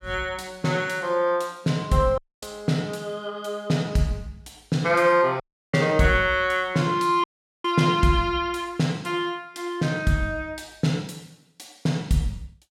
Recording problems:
audio cutting out; at 2 s, at 5.5 s and at 7 s

